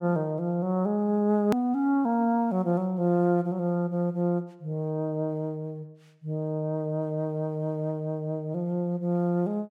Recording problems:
click at an edit; at 1.5 s

